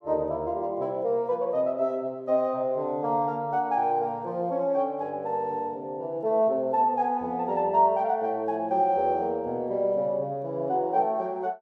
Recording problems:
none

